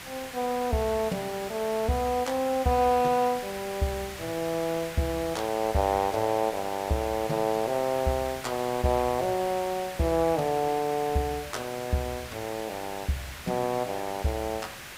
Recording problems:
background hiss; SNR 11 dB

